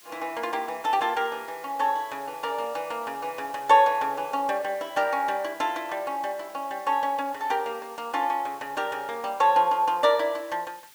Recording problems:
background hiss; slope +2 dB per octave, SNR 23 dB

